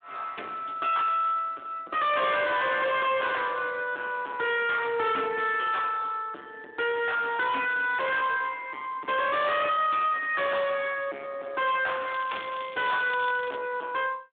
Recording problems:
telephone audio; 280 Hz to 3.7 kHz, Speex
distorted audio; soft clipping, signal-to-distortion ratio 6 dB
crackling; from 12 to 14 s; loose cable, SNR 16 dB

